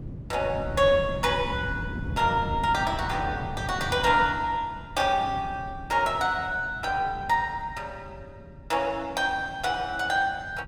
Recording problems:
wind on the microphone; below 200 Hz, SNR 12 dB

